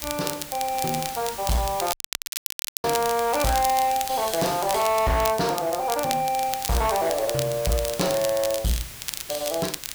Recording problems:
distortion; hard clipping, signal-to-distortion ratio 10 dB
hiss; slope 0 dB per octave, SNR 11 dB
crackling; vinyl, SNR 8 dB
audio cutting out; at 2 s for 1 s

